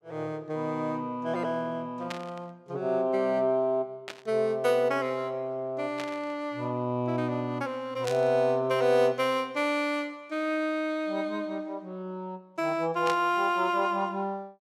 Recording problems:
burst of static; 5 times, first at 2 s; peak -3 dB vs average level

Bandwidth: 16.5 kHz